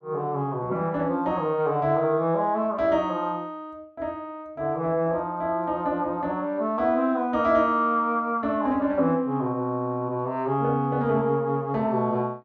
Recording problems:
none

